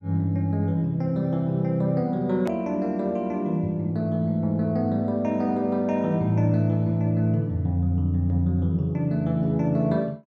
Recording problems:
edit click; at 2.5 s

